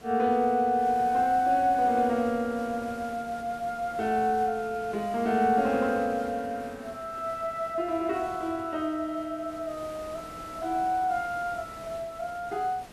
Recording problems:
background hiss; slope -5 dB per octave, SNR 19 dB

